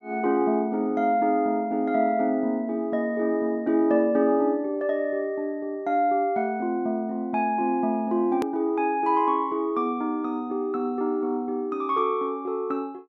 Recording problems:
edit click; at 8.5 s

